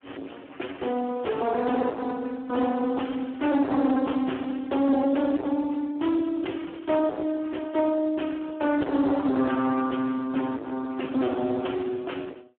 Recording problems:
phone line; 220 Hz to 3.4 kHz, Speex
distorted audio; hard clipping, uneven, signal-to-distortion ratio 5 dB

